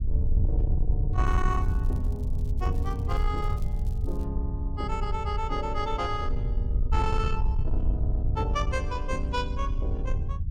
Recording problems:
distorted audio; soft clipping, signal-to-distortion ratio 12 dB
rumble; below 80 Hz, SNR -4 dB
crackle; from 1.5 to 4 s; loose cable, SNR 26 dB

